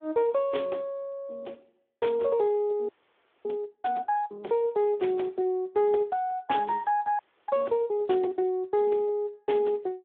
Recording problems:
telephone audio; 280 Hz to 3.6 kHz, Speex
frozen audio; at 3 s for 0.5 s and at 7 s

